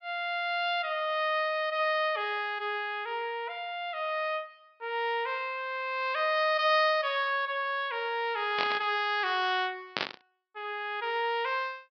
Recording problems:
treble cut off; nothing above 5.5 kHz
static burst; at 8.5 s and at 10 s; peak +3 dB vs average level

